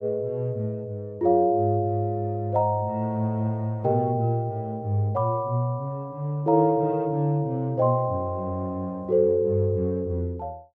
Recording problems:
none

